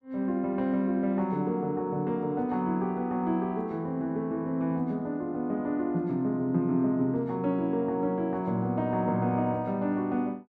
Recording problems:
none

